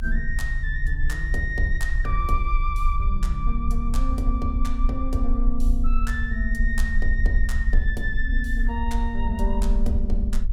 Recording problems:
rumble; below 48 Hz, strongest tone 26 Hz, SNR -3 dB

